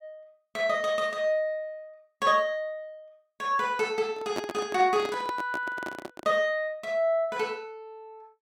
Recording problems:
handling noise; from 4 to 6.5 s; peak -1 dB vs average level

